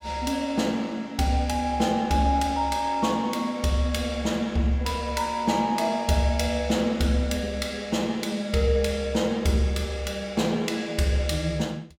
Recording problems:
none

